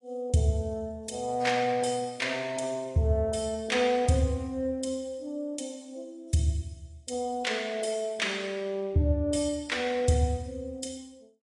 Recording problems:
codec artefacts; AAC, log-spectral distance 2 dB, nothing above 10.1 kHz

